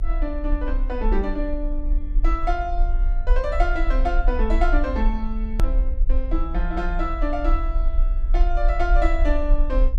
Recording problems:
hum; 50 Hz, harmonics up to 600 Hz, SNR 18 dB
rumble; below 40 Hz, strongest tone 30 Hz, SNR -3 dB
edit click; at 5.5 s

